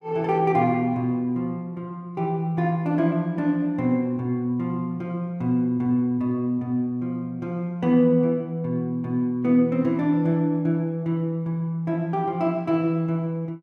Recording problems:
none

